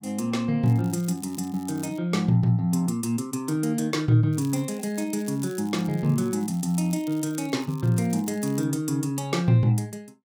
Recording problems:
crackling; from 0.5 to 2 s and from 4.5 to 8.5 s; loose cable, SNR 24 dB

